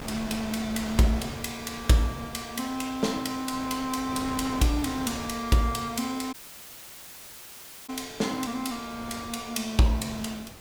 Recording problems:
background hiss; slope 0 dB per octave, SNR 20 dB
wind noise; below 1.3 kHz, SNR 13 dB
crackling; from 5 to 9 s; loose cable, SNR 30 dB
dropout; at 6.5 s for 1.5 s

